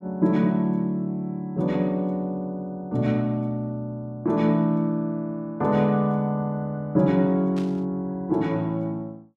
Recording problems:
burst of static; at 7.5 s; peak -13 dB vs average level

